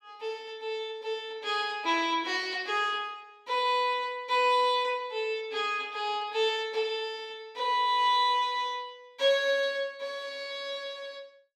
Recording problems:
none

